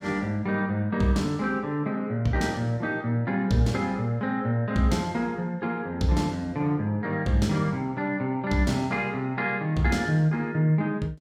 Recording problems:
none

